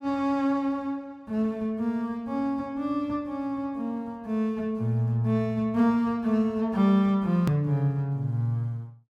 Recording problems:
edit click; at 7.5 s

